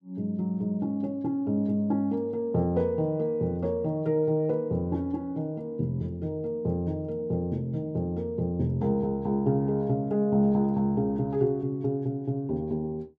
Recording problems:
none

